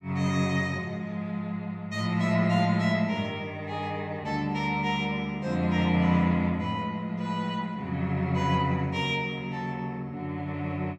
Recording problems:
none

